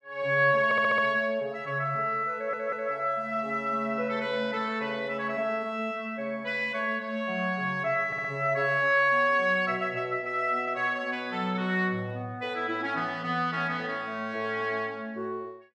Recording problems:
stutter; at 0.5 s, at 2.5 s and at 8 s

